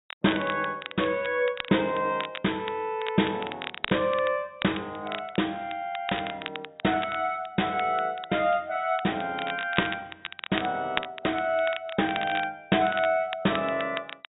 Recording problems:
low-pass filter; nothing above 4 kHz
crackle; vinyl, SNR 10 dB

